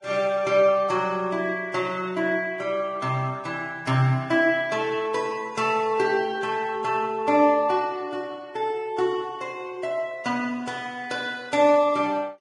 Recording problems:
lossy compression; Vorbis, log-spectral distance 2 dB, nothing above 10.1 kHz

